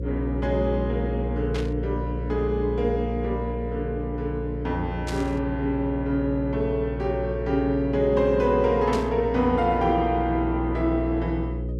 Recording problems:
hum; 60 Hz, harmonics up to 540 Hz, SNR 6 dB
static burst; at 1.5 s, at 5 s and at 9 s; peak -6 dB vs average level

